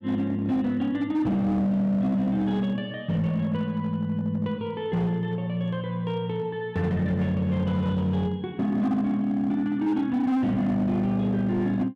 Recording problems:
distorted audio; hard clipping, signal-to-distortion ratio 12 dB

